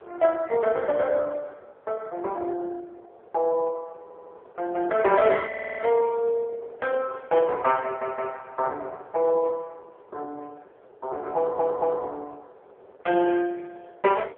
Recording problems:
telephone audio; 370 Hz to 2.8 kHz, AMR-NB
wind noise; below 750 Hz, SNR 24 dB
stutter; 4 times, first at 4 s

